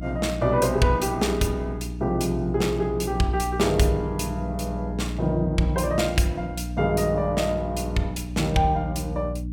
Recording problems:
hum; 60 Hz, harmonics up to 300 Hz, SNR 8 dB

